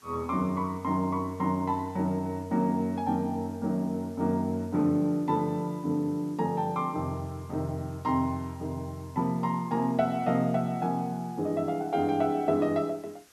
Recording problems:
hiss; slope -1 dB per octave, SNR 27 dB

